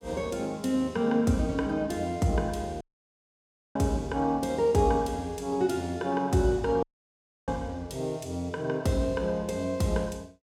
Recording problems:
audio cutting out; at 3 s for 1 s and at 7 s for 0.5 s

